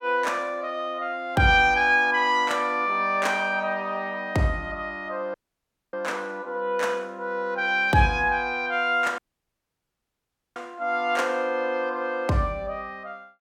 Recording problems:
dropout; at 5.5 s for 0.5 s and at 9 s for 1.5 s

